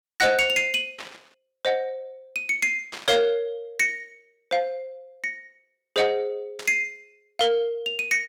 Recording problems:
distorted audio; soft clipping, signal-to-distortion ratio 10 dB
static burst; at 1 s, at 3 s and at 6.5 s; peak -7 dB vs average level

